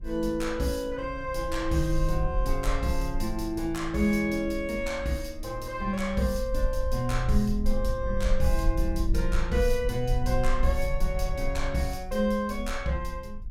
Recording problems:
rumble; below 48 Hz, strongest tone 20 Hz, SNR 5 dB

